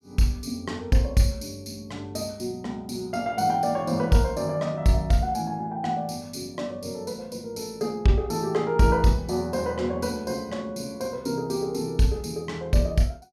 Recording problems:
none

